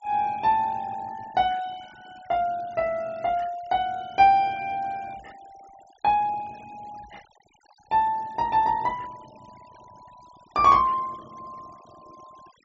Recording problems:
low-pass filter; nothing above 8 kHz
denoising artefacts; signal-to-artefact ratio 27 dB

